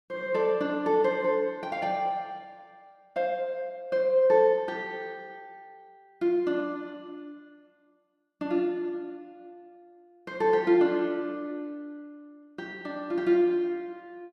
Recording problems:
none

